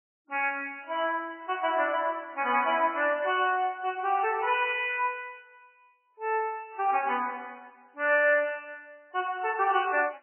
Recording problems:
lossy codec; MP3, log-spectral distance 4 dB, nothing above 2.5 kHz

